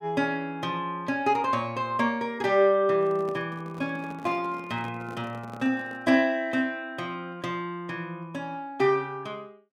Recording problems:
handling noise; from 3 to 6 s; peak -10 dB vs average level

